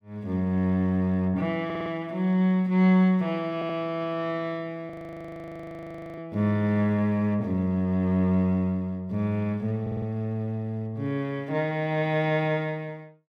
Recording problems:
stutter; at 1.5 s, at 3.5 s and at 10 s
frozen audio; at 5 s for 1.5 s

